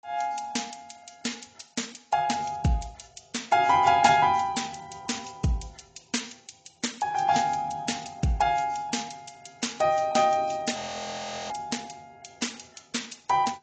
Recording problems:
codec artefacts; AAC, log-spectral distance 8 dB, nothing above 7.6 kHz
frozen audio; at 11 s for 0.5 s

